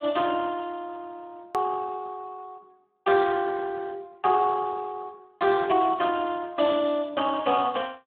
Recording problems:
telephone audio; 150 Hz to 3.4 kHz, Speex
edit click; at 1.5 s

